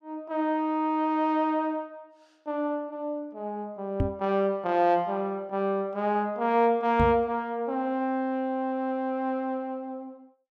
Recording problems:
microphone thump; at 4 s and at 7 s; peak +4 dB vs average level

